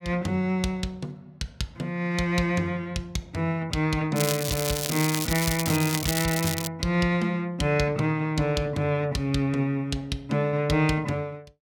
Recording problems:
crackle; from 4 to 6.5 s; loose cable, SNR 3 dB

